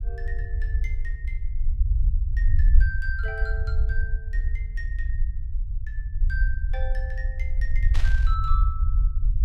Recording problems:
rumble; below 56 Hz, SNR -10 dB
burst of static; at 8 s; peak +3 dB vs average level

